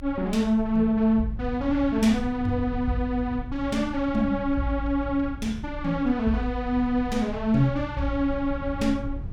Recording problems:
low-frequency rumble; below 94 Hz, strongest tone 24 Hz, SNR 13 dB

